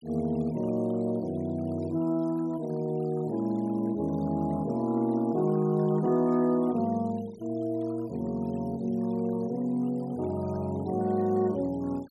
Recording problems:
noise reduction artefacts; signal-to-artefact ratio 26 dB

